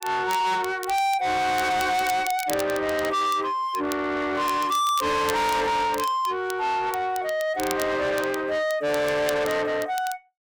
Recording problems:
distorted audio; soft clipping, signal-to-distortion ratio 7 dB
crackling; vinyl, SNR 15 dB

